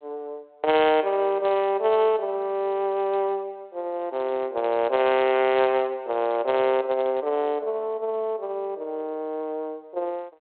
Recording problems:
phone line; 320 Hz to 3.9 kHz, G.726

